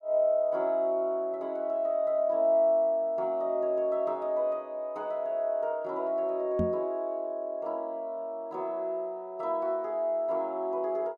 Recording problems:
knock on the microphone; at 6.5 s; peak +2 dB vs average level

